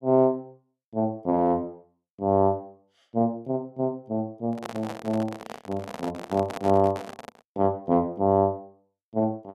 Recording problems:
microphone handling noise; from 4.5 to 7.5 s; peak -4 dB vs average level

